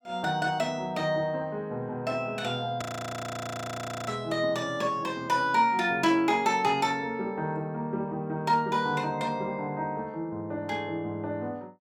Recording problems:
frozen audio; at 3 s for 1.5 s

